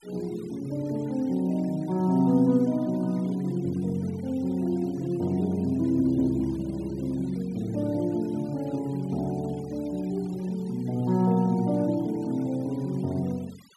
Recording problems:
denoising artefacts; signal-to-artefact ratio 25 dB

